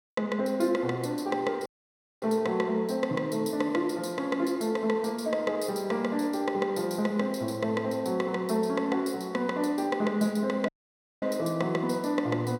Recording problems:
audio cutting out; at 1.5 s for 0.5 s and at 11 s for 0.5 s

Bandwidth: 17 kHz